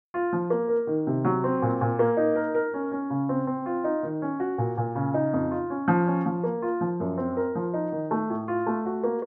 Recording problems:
none

